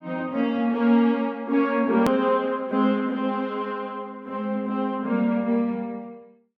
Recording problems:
hard cut with a click; at 2 s

